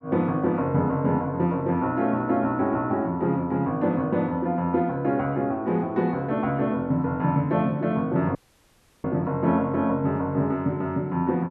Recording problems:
dropout; at 8.5 s for 0.5 s

